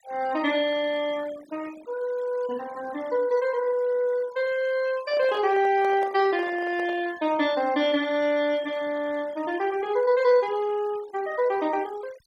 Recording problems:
denoising artefacts; signal-to-artefact ratio 21 dB
handling noise; from 5 to 7 s; peak -8 dB vs average level

